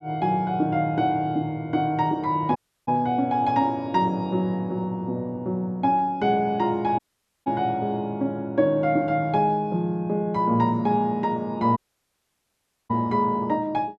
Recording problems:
dropout; at 2.5 s, at 7 s and at 12 s for 1 s

